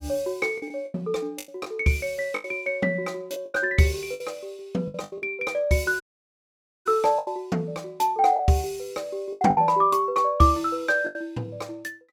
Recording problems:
packet loss; 9% of the sound replaced, filled with the last packet
audio cutting out; at 6 s for 1 s

